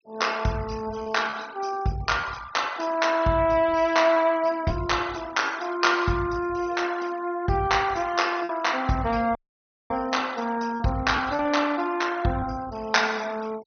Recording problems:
low-pass filter; nothing above 6.3 kHz
denoising artefacts; signal-to-artefact ratio 20 dB
packet loss; 3% of the sound replaced, filled with repeated pitch periods
dropout; at 9.5 s for 0.5 s

